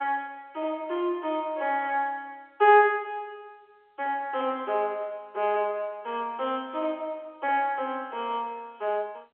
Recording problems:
phone line; 340 Hz to 3.4 kHz, G.711

